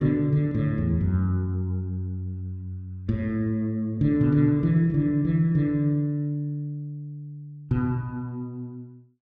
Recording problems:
none

